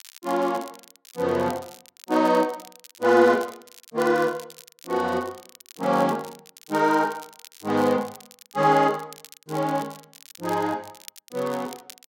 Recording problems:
crackling; vinyl, SNR 22 dB

